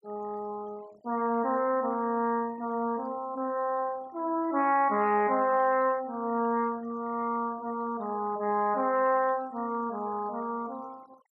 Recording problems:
noise reduction artefacts; signal-to-artefact ratio 25 dB

